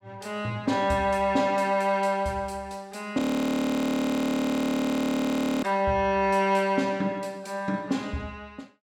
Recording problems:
frozen audio; at 3 s for 2.5 s

